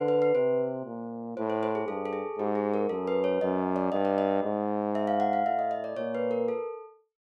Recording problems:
none

